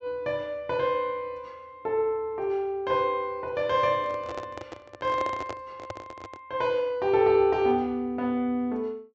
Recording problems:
treble cut off; nothing above 8 kHz
microphone handling noise; from 4 to 6.5 s; peak -5 dB vs average level

